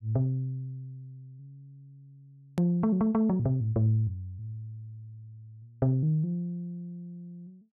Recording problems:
hard cut with a click; at 2.5 s

